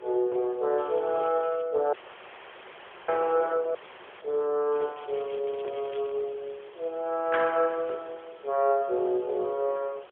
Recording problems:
phone line; 320 Hz to 3.5 kHz, AMR-NB, then MP3
background hiss; SNR 26 dB
wind on the microphone; below 980 Hz, SNR 22 dB
crackle; at 1 s and from 4.5 to 6 s; loose cable, SNR 22 dB
audio cutting out; at 2 s for 1 s and at 4 s

